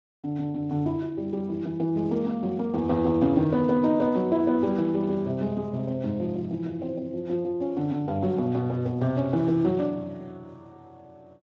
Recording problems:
codec artefacts; Speex, log-spectral distance 2 dB

